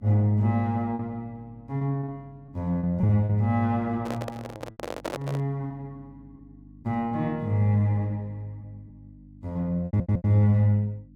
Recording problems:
hum; 50 Hz, harmonics up to 300 Hz, SNR 25 dB
lost packets; 6% of the sound replaced, filled with repeated pitch periods
handling noise; from 4 to 5.5 s; peak -2 dB vs average level
audio stuttering; at 10 s

